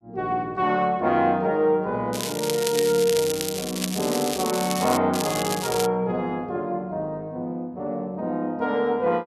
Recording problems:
crackle; from 2 to 5 s and at 5 s; loose cable, SNR 6 dB

